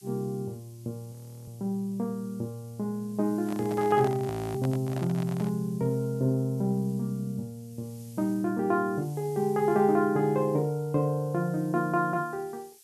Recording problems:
hiss; slope +6 dB per octave, SNR 25 dB
frozen audio; at 1 s and at 4.5 s
handling noise; from 3.5 to 5.5 s; peak -6 dB vs average level

